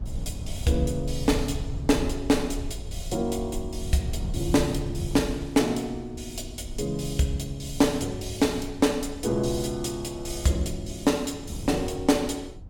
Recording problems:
rumble; below 86 Hz, SNR 12 dB
wind on the microphone; below 160 Hz, SNR 14 dB

